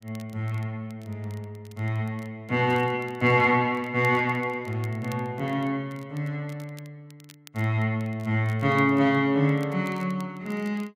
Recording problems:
crackle; vinyl, SNR 28 dB

